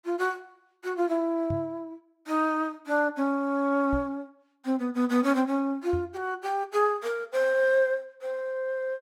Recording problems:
knock on the microphone; at 1.5 s, at 4 s and at 6 s; peak -3 dB vs average level

